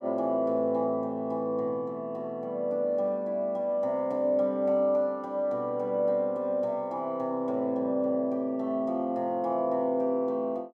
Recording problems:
none

